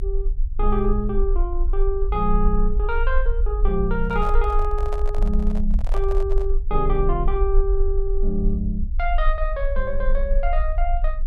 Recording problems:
rumble; below 42 Hz, strongest tone 24 Hz, SNR -1 dB
microphone handling noise; from 4 to 6.5 s; peak -5 dB vs average level

